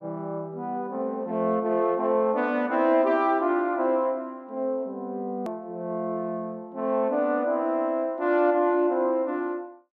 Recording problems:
edit click; at 5.5 s

